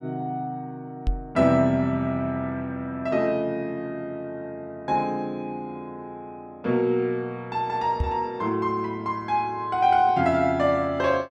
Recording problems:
microphone bump; at 1 s and at 8 s; peak +3 dB vs average level

